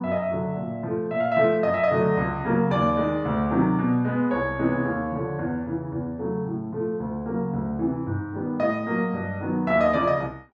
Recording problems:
none

